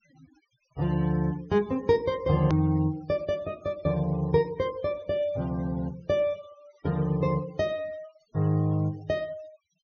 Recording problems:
treble cut off; nothing above 6.5 kHz
noise reduction artefacts; signal-to-artefact ratio 24 dB
click at an edit; at 2.5 s

